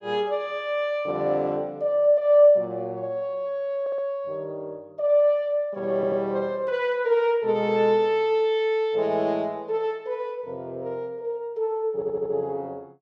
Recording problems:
stutter; at 4 s, at 6 s and at 12 s

